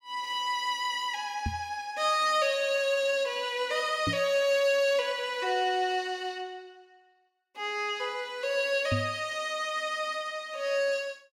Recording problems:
knock on the microphone; at 1.5 s, at 4 s and at 9 s; peak +2 dB vs average level

